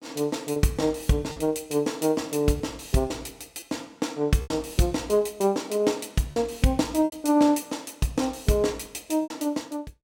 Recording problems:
packet loss; 5% of the sound replaced, filled with repeated pitch periods

